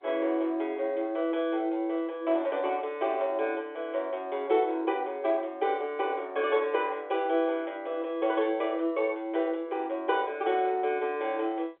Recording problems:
telephone audio; 300 Hz to 3.7 kHz, G.711

